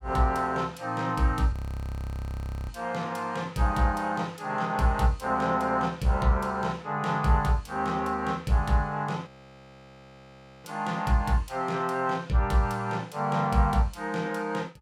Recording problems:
frozen audio; at 1.5 s for 1 s and at 9.5 s for 1.5 s

